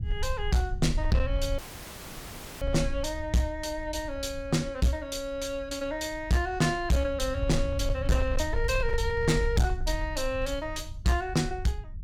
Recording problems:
distorted audio; hard clipping, uneven, signal-to-distortion ratio 10 dB
low-frequency rumble; below 72 Hz, SNR 6 dB
audio cutting out; at 1.5 s for 1 s

